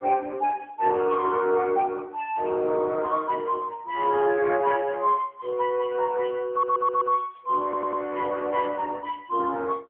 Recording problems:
phone line; 320 Hz to 2.9 kHz, AMR-NB
stutter; at 6.5 s and at 7.5 s

